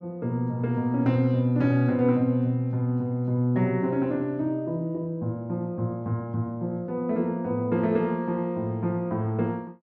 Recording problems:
none

